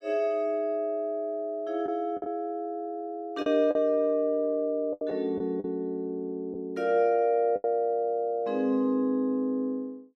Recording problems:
lost packets; 4% of the sound replaced, filled with the last packet

